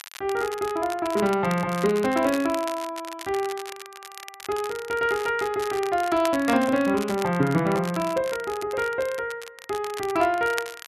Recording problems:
crackle; vinyl, SNR 14 dB

